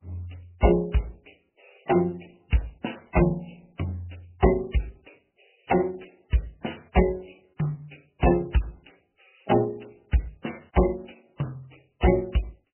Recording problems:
lossy codec; Opus, then MP3, log-spectral distance 9 dB, nothing above 3 kHz

